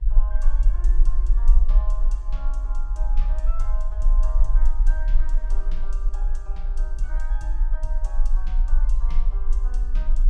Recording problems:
low-frequency rumble; below 38 Hz, strongest tone 18 Hz, SNR -18 dB
wind on the microphone; below 540 Hz, SNR 20 dB

